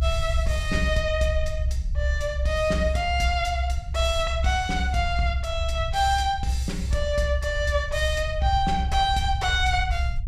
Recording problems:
rumble; below 68 Hz, strongest tone 66 Hz, SNR 3 dB

